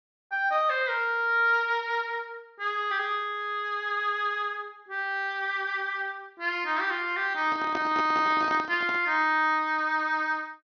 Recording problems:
treble missing; nothing above 6.3 kHz
handling noise; from 7.5 to 9 s; peak -2 dB vs average level

